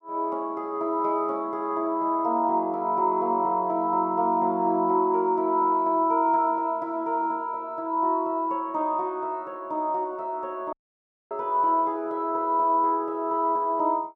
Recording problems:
dropout; at 11 s for 0.5 s

